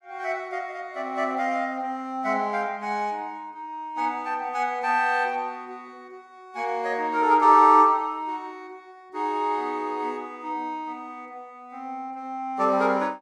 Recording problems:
none

